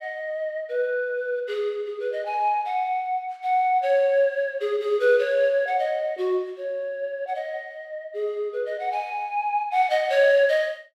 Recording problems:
none

